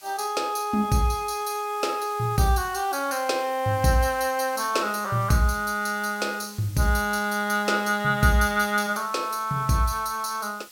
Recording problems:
background hiss; slope +2 dB per octave, SNR 20 dB

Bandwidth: 16.5 kHz